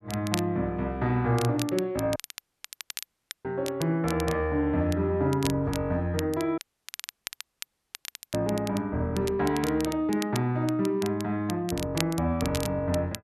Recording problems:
crackle; vinyl, SNR 12 dB
audio cutting out; at 2 s for 1.5 s and at 6.5 s for 2 s

